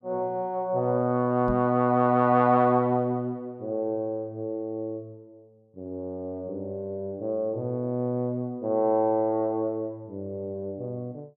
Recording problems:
microphone thump; at 1.5 s; peak -3 dB vs average level

